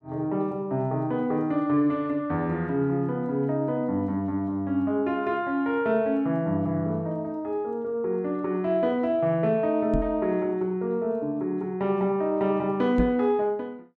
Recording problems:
microphone thump; at 10 s and at 13 s; peak +3 dB vs average level

